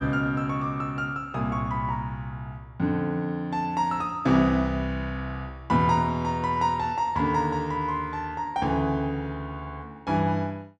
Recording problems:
none

